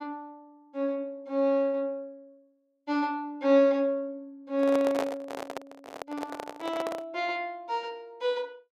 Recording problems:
handling noise; from 4.5 to 7 s; peak +2 dB vs average level

